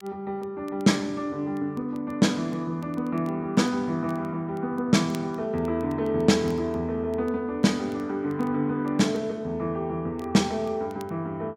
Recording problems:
crackling; vinyl, SNR 30 dB

